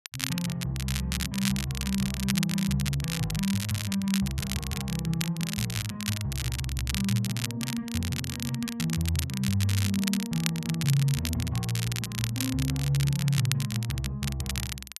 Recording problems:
crackling; vinyl, SNR 5 dB

